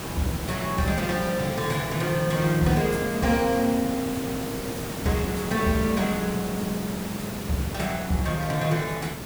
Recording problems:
background hiss; slope -5 dB per octave, SNR 6 dB

